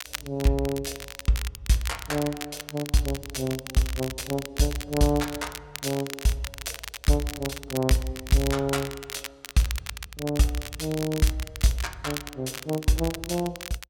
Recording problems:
crackling; vinyl, SNR 10 dB

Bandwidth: 16.5 kHz